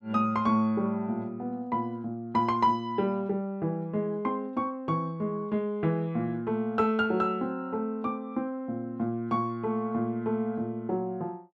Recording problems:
none

